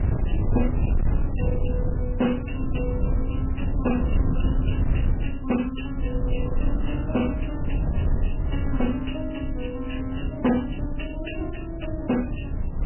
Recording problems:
lossy compression; MP3, log-spectral distance 4 dB, nothing above 3 kHz
distortion; hard clipping, uneven, signal-to-distortion ratio 11 dB
low-frequency rumble; below 110 Hz, SNR -1 dB

